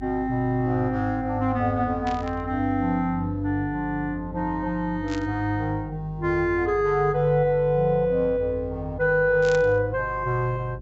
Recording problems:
low-pass filter; nothing above 7.7 kHz
mains hum; 50 Hz, harmonics up to 400 Hz, SNR 16 dB
burst of static; at 2 s, at 5 s and at 9.5 s; peak -9 dB vs average level

